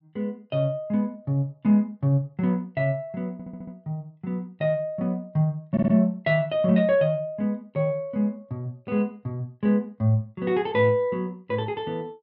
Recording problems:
low-pass filter; nothing above 5.4 kHz
stutter; at 3.5 s and at 5.5 s

